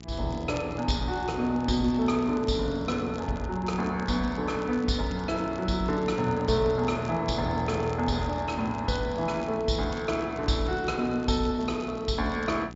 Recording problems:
treble cut off; nothing above 7.3 kHz
electrical hum; 60 Hz, harmonics up to 900 Hz, SNR 16 dB
crackle; vinyl, SNR 24 dB

